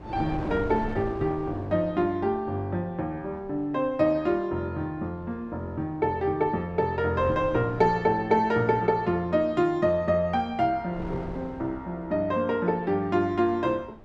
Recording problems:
wind noise; below 560 Hz, SNR 16 dB

